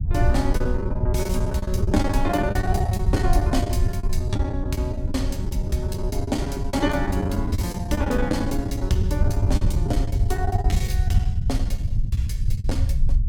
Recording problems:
rumble; below 94 Hz, SNR -1 dB
lost packets; 17% of the sound replaced, filled with the last packet

